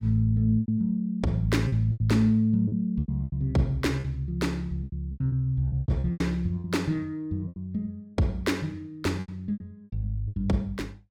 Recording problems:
packet loss; 12% of the sound replaced, filled with repeated pitch periods

